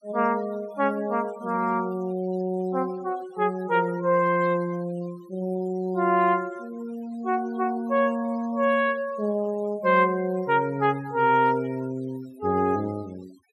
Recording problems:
denoising artefacts; signal-to-artefact ratio 24 dB

